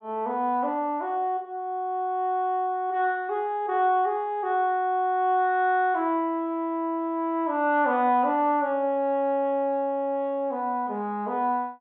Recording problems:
treble cut off; nothing above 4 kHz

